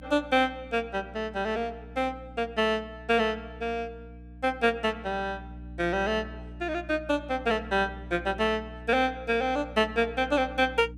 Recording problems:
hum; 60 Hz, harmonics up to 300 Hz, SNR 17 dB

